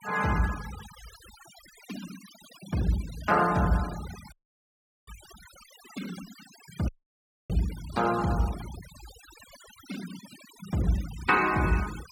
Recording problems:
noise reduction artefacts; signal-to-artefact ratio 16 dB
audio cutting out; at 4.5 s for 1 s and at 7 s for 0.5 s

